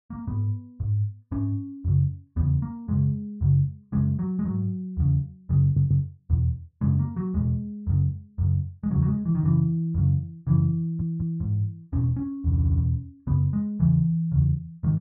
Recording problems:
audio stuttering; at 5.5 s, at 11 s and at 12 s

